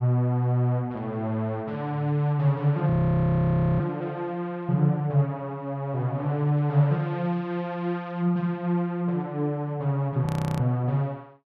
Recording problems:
frozen audio; at 3 s for 1 s and at 10 s

